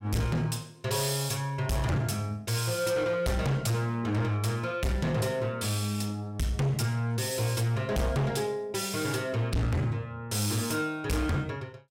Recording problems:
distorted audio; hard clipping, signal-to-distortion ratio 6 dB

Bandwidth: 16 kHz